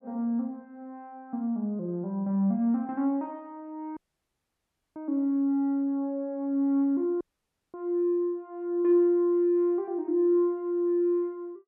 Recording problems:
dropout; at 4 s for 1 s and at 7 s for 0.5 s

